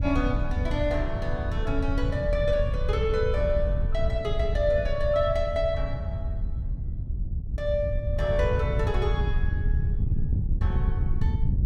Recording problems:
wind noise; below 96 Hz, SNR 0 dB

